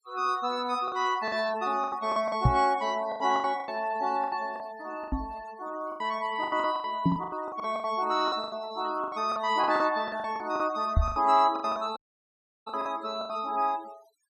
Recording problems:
noise reduction artefacts; signal-to-artefact ratio 19 dB
lost packets; 16% of the sound replaced, filled with the last packet
microphone bump; 4 times, first at 2.5 s; peak +9 dB vs average level
dropout; at 12 s for 0.5 s

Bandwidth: 15.5 kHz